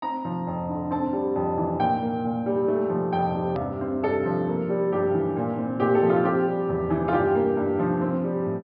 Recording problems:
low-pass filter; nothing above 5.3 kHz
click at an edit; at 3.5 s

